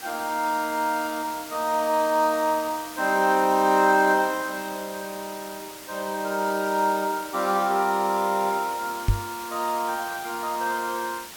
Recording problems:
hiss; slope -1 dB per octave, SNR 14 dB
microphone thump; at 9 s; peak +5 dB vs average level

